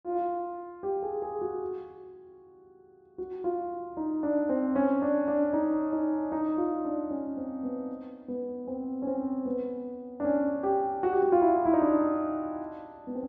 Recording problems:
none

